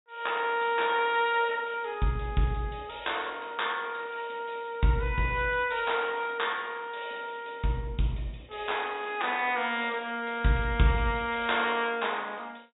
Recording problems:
low-pass filter; nothing above 4 kHz

